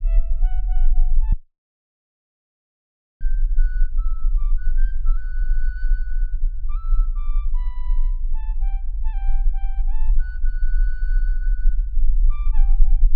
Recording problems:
low-frequency rumble; below 34 Hz, strongest tone 20 Hz, SNR -22 dB
dropout; at 1.5 s for 2 s

